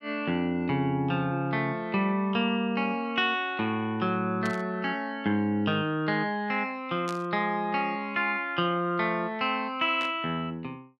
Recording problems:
static burst; at 4.5 s, at 7 s and at 10 s; peak -8 dB vs average level

